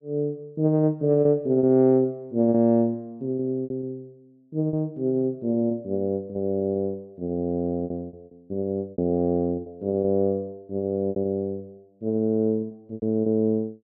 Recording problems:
lost packets; 10% of the sound replaced, filled with repeated pitch periods

